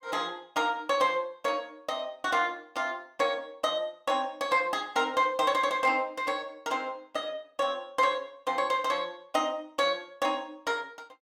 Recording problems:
none

